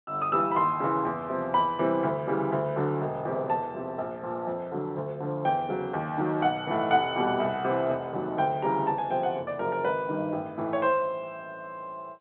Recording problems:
phone line; 190 Hz to 3.8 kHz, G.711

